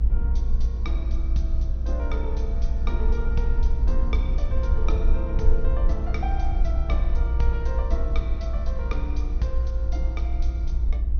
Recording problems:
treble cut off; nothing above 6.4 kHz
low-frequency rumble; below 58 Hz, SNR -9 dB

